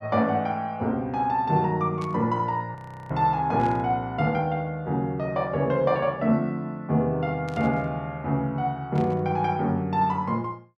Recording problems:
burst of static; 4 times, first at 2 s; peak -14 dB vs average level
frozen audio; at 3 s

